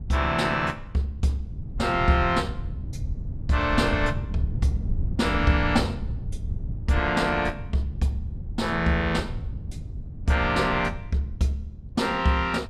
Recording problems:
wind on the microphone; below 110 Hz, SNR 8 dB

